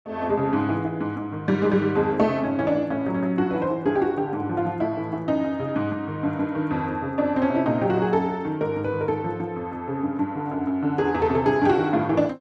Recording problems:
none

